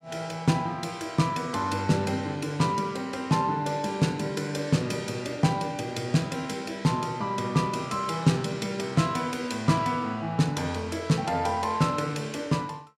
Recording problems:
none

